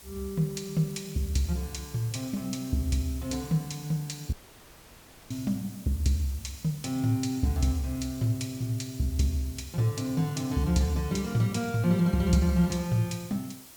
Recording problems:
hiss; slope -1 dB per octave, SNR 19 dB
crackle; at 1 s, from 7.5 to 9.5 s and at 10 s; loose cable, SNR 30 dB
audio cutting out; at 4.5 s for 1 s

